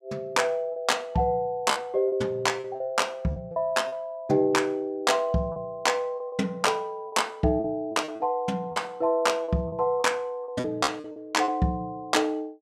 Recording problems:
lost packets; 8% of the sound replaced, filled with repeated pitch periods

